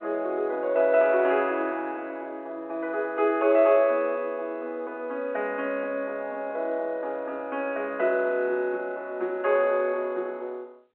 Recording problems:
telephone audio; 300 Hz to 3.4 kHz, G.711

